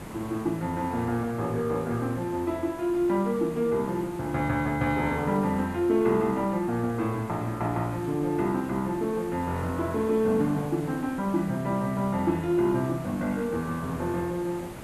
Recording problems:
hiss; slope -6 dB per octave, SNR 15 dB

